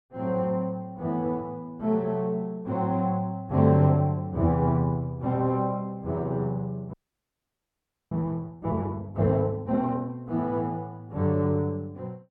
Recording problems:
audio freezing; at 7 s for 1 s

